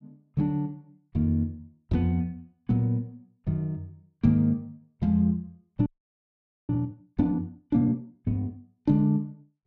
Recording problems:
frozen audio; at 6 s for 1 s

